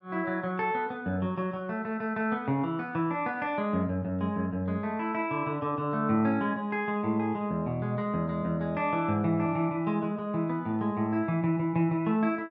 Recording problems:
none

